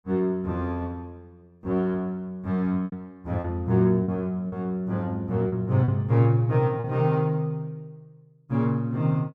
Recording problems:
packet loss; 4% of the sound replaced, filled with repeated pitch periods

